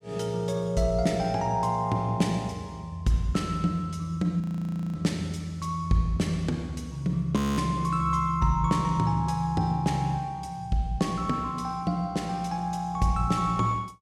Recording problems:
frozen audio; at 4.5 s for 0.5 s and at 7.5 s

